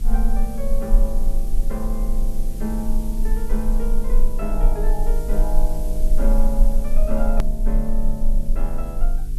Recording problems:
hum; 50 Hz, harmonics up to 450 Hz, SNR 6 dB
background hiss; slope +4 dB per octave, SNR 15 dB
rumble; below 30 Hz, strongest tone 20 Hz, SNR -5 dB
hard cut with a click; at 7.5 s

